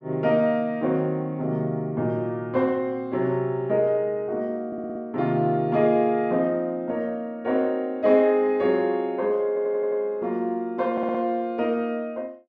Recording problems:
stutter; at 4.5 s, at 9.5 s and at 11 s

